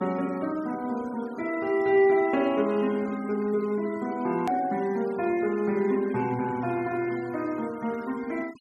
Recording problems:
denoising artefacts; signal-to-artefact ratio 21 dB
edit click; at 4.5 s

